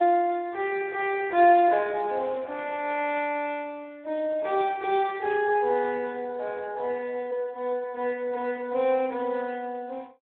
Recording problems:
telephone audio; 300 Hz to 3.7 kHz, Speex

